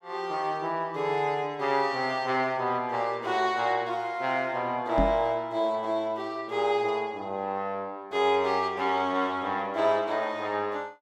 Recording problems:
microphone thump; at 5 s; peak +4 dB vs average level

